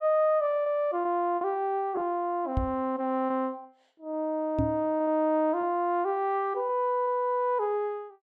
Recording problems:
lost packets; 5% of the sound replaced, filled with repeated pitch periods
microphone thump; at 2.5 s and at 4.5 s; peak +3 dB vs average level

